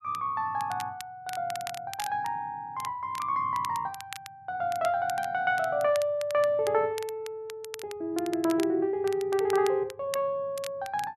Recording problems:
crackle; vinyl, SNR 15 dB

